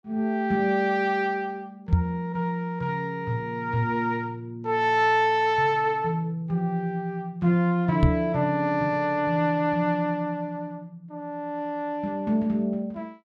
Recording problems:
knock on the microphone; at 2 s and at 8 s; peak +9 dB vs average level

